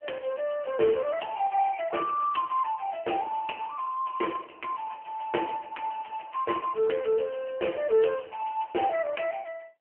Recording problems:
telephone audio; 280 Hz to 3.1 kHz, AMR-NB

